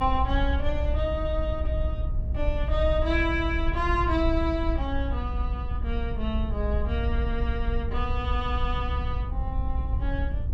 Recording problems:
low-frequency rumble; below 66 Hz, SNR -1 dB

